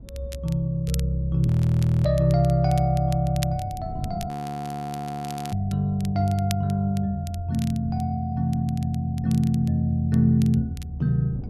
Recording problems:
wind on the microphone; below 200 Hz, SNR 18 dB
crackle; vinyl, SNR 20 dB
frozen audio; at 1.5 s for 0.5 s and at 4.5 s for 1 s

